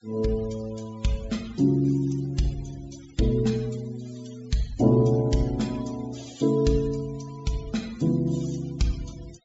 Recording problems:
treble missing; nothing above 8 kHz
noise reduction artefacts; signal-to-artefact ratio 21 dB

